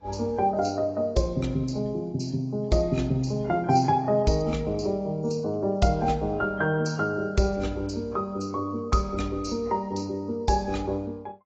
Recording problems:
lossy codec; AAC, log-spectral distance 2 dB, nothing above 7.3 kHz

